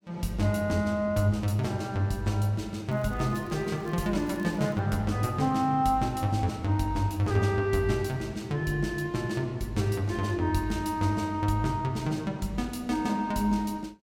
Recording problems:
crackling; from 3 to 5 s; loose cable, SNR 29 dB

